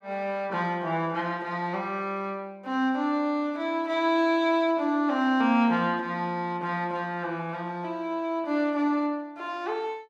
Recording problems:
none

